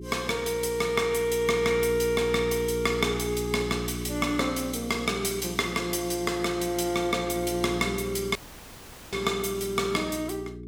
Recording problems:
electrical hum; 60 Hz, harmonics up to 420 Hz, SNR 10 dB
dropout; at 8.5 s for 1 s

